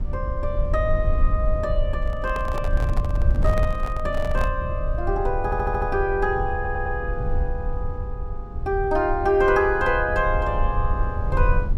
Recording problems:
rumble; below 68 Hz, SNR 3 dB
handling noise; from 2 to 4.5 s; peak -5 dB vs average level
audio stuttering; at 5.5 s and at 6.5 s

